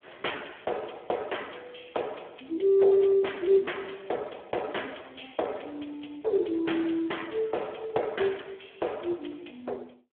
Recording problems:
phone line; 300 Hz to 3.4 kHz, Speex

